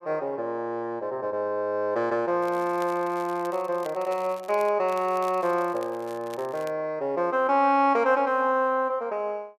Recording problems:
crackling; from 2.5 to 4.5 s and from 5 to 6.5 s; loose cable, SNR 23 dB

